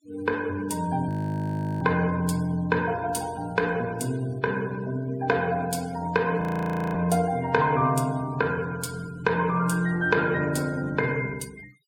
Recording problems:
noise reduction artefacts; signal-to-artefact ratio 22 dB
audio freezing; at 1 s for 0.5 s and at 6.5 s for 0.5 s

